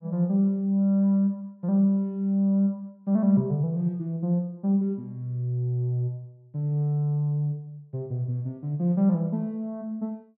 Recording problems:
none

